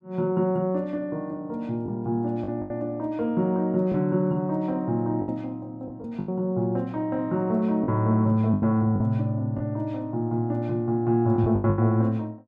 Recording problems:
packet loss; 6% of the sound replaced, filled with the last packet

